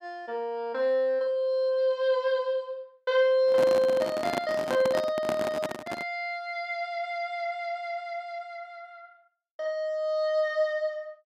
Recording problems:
handling noise; from 3.5 to 6 s; peak +1 dB vs average level

